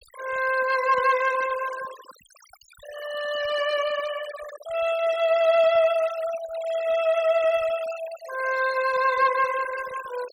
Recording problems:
noise reduction artefacts; signal-to-artefact ratio 15 dB

